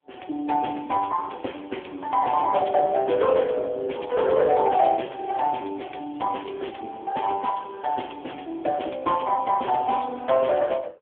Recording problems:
telephone audio; 260 Hz to 3.4 kHz, AMR-NB

